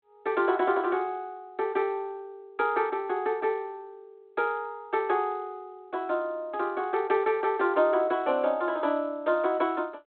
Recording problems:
phone line; 220 Hz to 3.5 kHz, G.726

